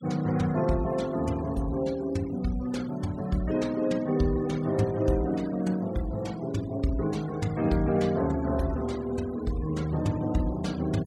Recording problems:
denoising artefacts; signal-to-artefact ratio 20 dB

